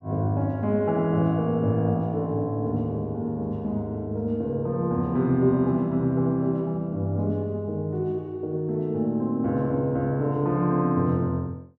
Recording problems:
none

